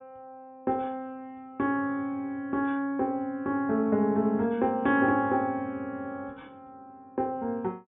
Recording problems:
treble missing; nothing above 4 kHz

